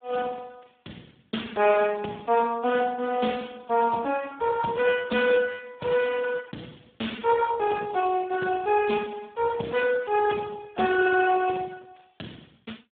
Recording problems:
telephone audio; 190 Hz to 2.3 kHz, Speex

